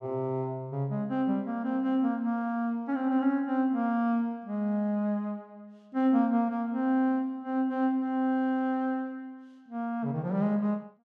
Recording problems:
none

